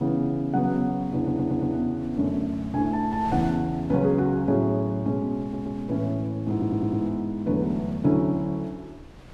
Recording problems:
wind noise; below 460 Hz, SNR 20 dB
audio stuttering; at 1 s, at 5.5 s and at 6.5 s

